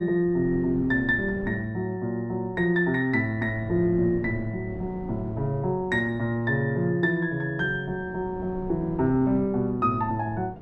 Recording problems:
wind noise; below 300 Hz, SNR 15 dB

